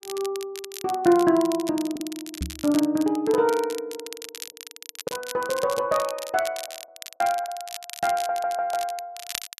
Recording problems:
crackle; vinyl, SNR 13 dB
lost packets; 2% of the sound replaced, filled with the last packet
knock on the microphone; at 2.5 s; peak -2 dB vs average level
stutter; at 8 s

